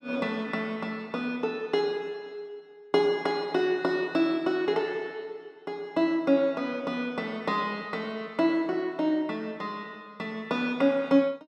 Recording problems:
none

